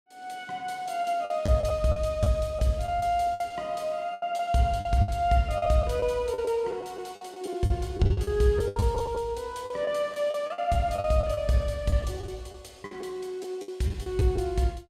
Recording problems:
packet loss; 12% of the sound replaced, filled with the last packet

